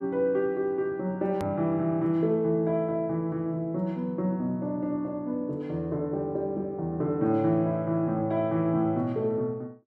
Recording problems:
hard cut with a click; at 1.5 s

